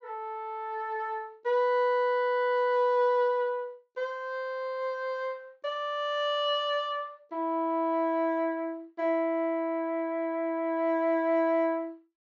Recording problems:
treble cut off; nothing above 8 kHz

